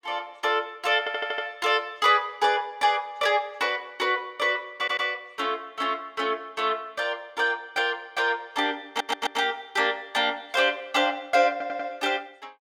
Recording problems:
stutter; 4 times, first at 1 s

